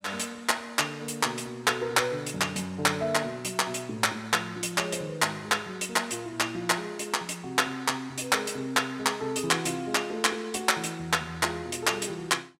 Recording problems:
none

